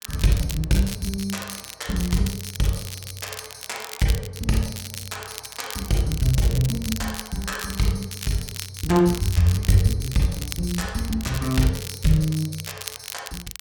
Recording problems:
crackle; vinyl, SNR 11 dB

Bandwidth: 18 kHz